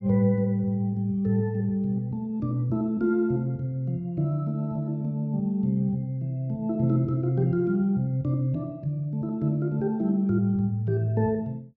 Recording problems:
none

